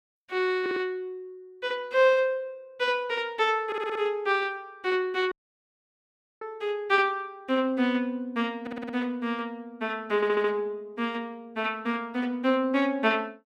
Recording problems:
stutter; 4 times, first at 0.5 s
dropout; at 5.5 s for 1 s

